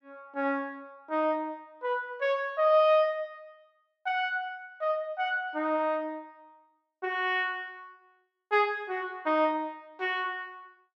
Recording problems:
none

